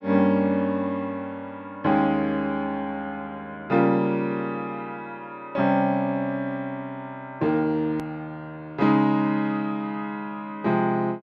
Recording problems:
click at an edit; at 8 s

